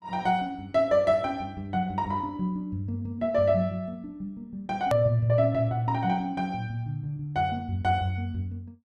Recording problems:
click at an edit; at 5 s

